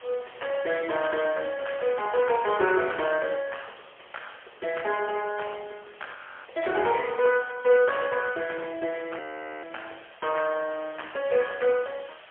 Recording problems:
telephone audio; 340 Hz to 3.3 kHz, AMR-NB, then MP3
background hiss; SNR 23 dB
audio freezing; at 6 s and at 9 s

